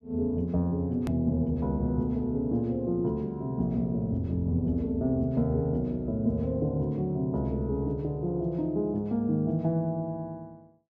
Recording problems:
click at an edit; at 1 s

